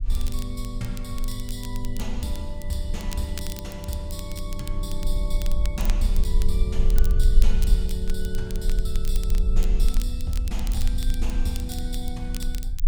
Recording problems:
low-frequency rumble; below 40 Hz, strongest tone 20 Hz, SNR -5 dB
crackle; vinyl, SNR 10 dB

